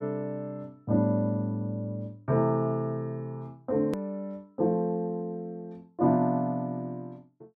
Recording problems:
hard cut with a click; at 4 s

